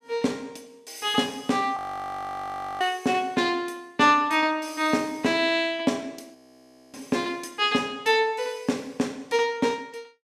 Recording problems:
frozen audio; at 2 s for 1 s and at 6.5 s for 0.5 s

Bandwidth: 15.5 kHz